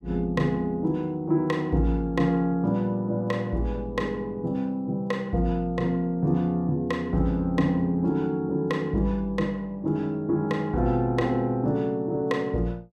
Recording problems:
none

